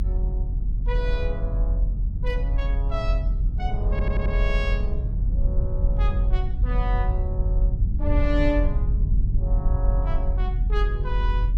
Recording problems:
low-frequency rumble; below 64 Hz, strongest tone 42 Hz, SNR -7 dB
wind on the microphone; below 230 Hz, SNR 14 dB
audio stuttering; at 4 s

